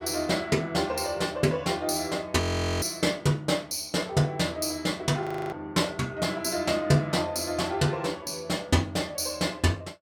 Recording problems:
frozen audio; at 2.5 s and at 5 s

